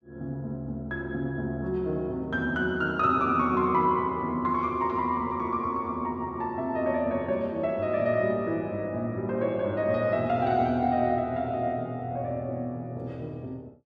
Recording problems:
none

